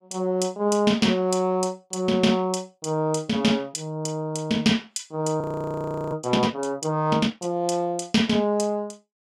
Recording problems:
audio freezing; at 5.5 s for 0.5 s

